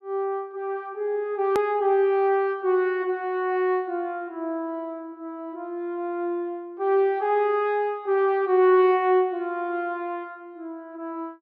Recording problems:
edit click; at 1.5 s

